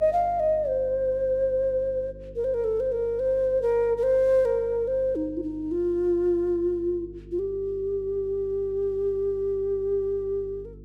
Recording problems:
electrical hum; 50 Hz, harmonics up to 450 Hz, SNR 20 dB

